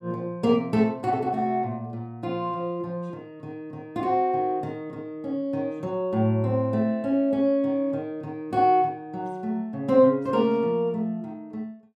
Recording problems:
none

